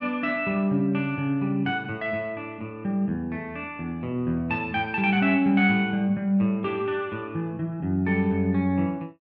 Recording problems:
none

